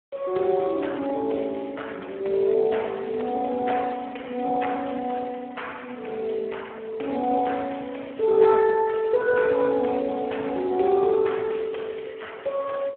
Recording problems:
phone line; 300 Hz to 3.2 kHz, Speex

